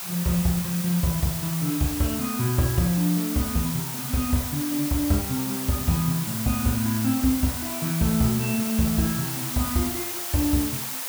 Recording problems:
background hiss; SNR 4 dB

